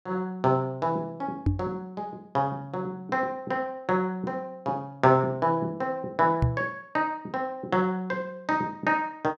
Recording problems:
knock on the microphone; at 1.5 s and at 6.5 s; peak +7 dB vs average level

